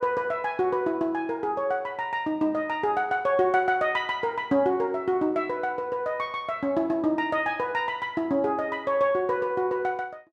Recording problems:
none

